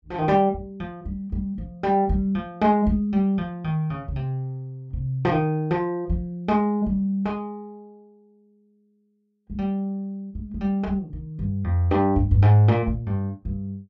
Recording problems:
none

